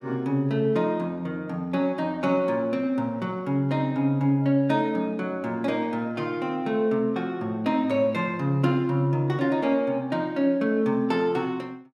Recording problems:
none

